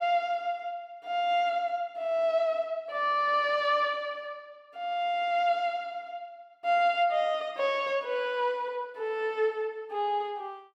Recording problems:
none

